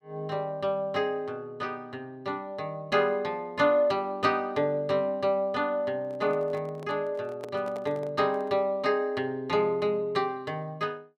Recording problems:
handling noise; from 6 to 8.5 s; peak -8 dB vs average level

